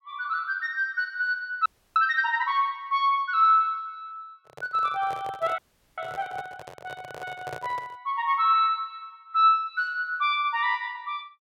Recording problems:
frozen audio; at 1.5 s and at 5.5 s
microphone handling noise; from 4.5 to 8 s; peak -8 dB vs average level

